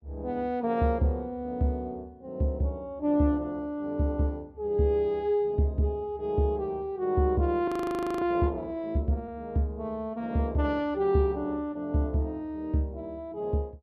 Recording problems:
audio freezing; at 7.5 s for 0.5 s

